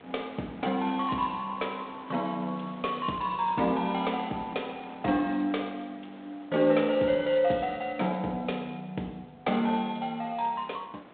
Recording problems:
phone line; 170 Hz to 3.7 kHz, G.726
wind on the microphone; below 1.6 kHz, SNR 21 dB

